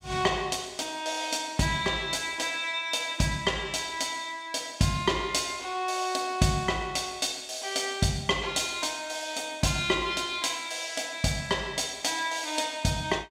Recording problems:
none

